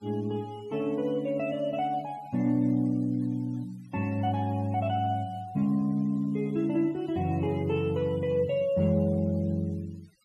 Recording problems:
noise reduction artefacts; signal-to-artefact ratio 27 dB

